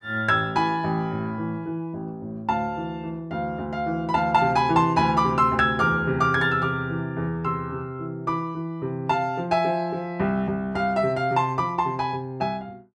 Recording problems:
none

